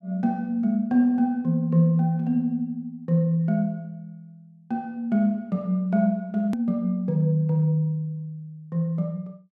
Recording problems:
hard cut with a click; at 6.5 s

